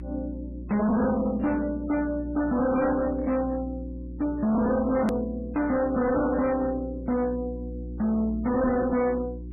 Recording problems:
codec artefacts; MP3, log-spectral distance 2 dB, nothing above 13.1 kHz
distorted audio; hard clipping, signal-to-distortion ratio 7 dB
electrical hum; 60 Hz, harmonics up to 360 Hz, SNR 12 dB
hard cut with a click; at 5 s

